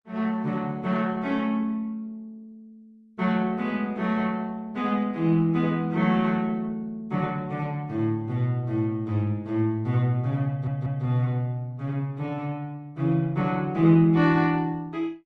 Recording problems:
lossy compression; Opus, log-spectral distance 2 dB
audio stuttering; at 10 s

